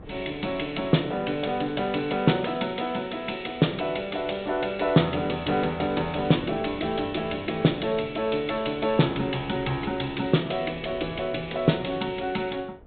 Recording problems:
treble missing; nothing above 4 kHz
wind on the microphone; below 490 Hz, SNR 20 dB

